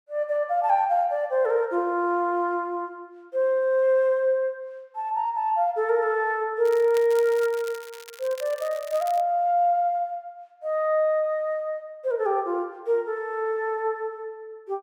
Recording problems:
crackle; from 6.5 to 9 s; loose cable, SNR 20 dB

